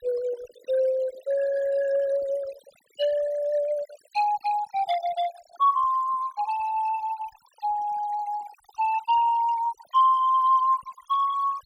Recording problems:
denoising artefacts; signal-to-artefact ratio 17 dB

